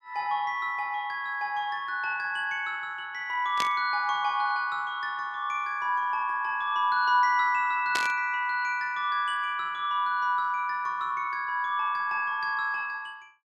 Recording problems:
burst of static; at 3.5 s and at 8 s; peak +2 dB vs average level

